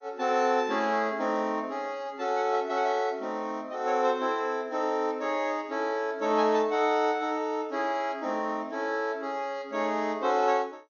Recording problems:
lossy compression; MP2, log-spectral distance 2 dB, nothing above 6.7 kHz

